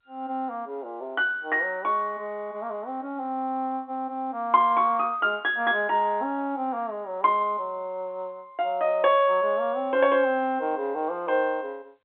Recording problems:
telephone audio; 280 Hz to 3.6 kHz, G.711

